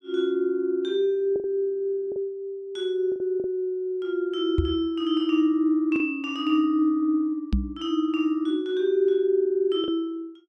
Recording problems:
lost packets; 3% of the sound replaced, filled with the last packet
microphone thump; at 4.5 s and at 7.5 s; peak +4 dB vs average level

